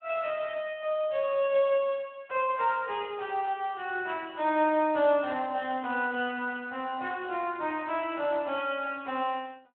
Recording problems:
telephone audio; 260 Hz to 3.4 kHz, Speex

